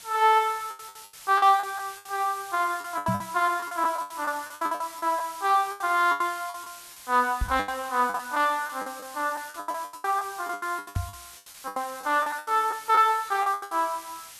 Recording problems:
background hiss; slope +2 dB per octave, SNR 17 dB
packet loss; 18% of the sound replaced, filled with the last packet
microphone thump; at 3 s, at 7.5 s and at 11 s; peak +1 dB vs average level

